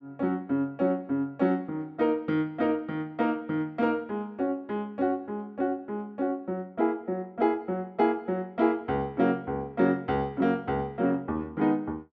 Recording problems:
none

